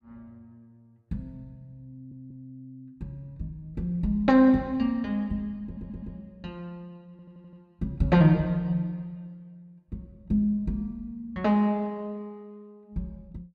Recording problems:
stutter; at 2 s, at 5.5 s and at 7 s

